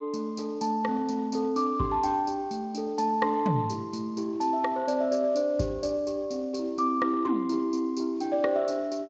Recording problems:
lossy compression; Speex, log-spectral distance 3 dB

